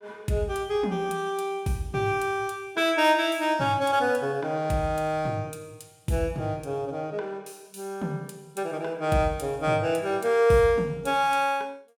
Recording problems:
none

